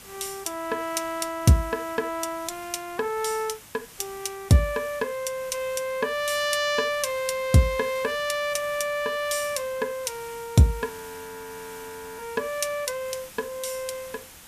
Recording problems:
hiss; slope -1 dB per octave, SNR 17 dB
frozen audio; at 11 s for 1.5 s

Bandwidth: 14.5 kHz